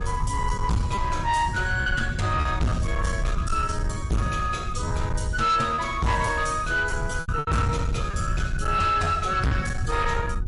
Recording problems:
codec artefacts; MP3, log-spectral distance 2 dB, nothing above 10.7 kHz
distortion; soft clipping, signal-to-distortion ratio 8 dB
hum; 60 Hz, harmonics up to 1.2 kHz, SNR 21 dB
low-frequency rumble; below 120 Hz, SNR 5 dB
packet loss; 5% of the sound replaced, filled with repeated pitch periods

